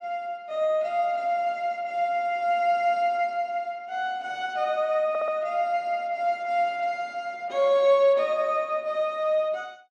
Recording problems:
audio stuttering; at 5 s

